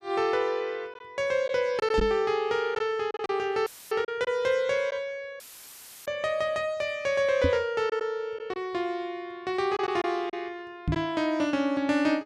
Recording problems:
packet loss; 3% of the sound replaced, filled with silence
microphone bump; at 2 s, at 7.5 s and at 11 s; peak +4 dB vs average level
audio cutting out; at 3.5 s and at 5.5 s for 0.5 s; filled with static

